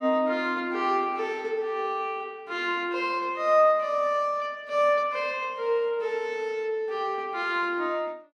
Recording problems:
none

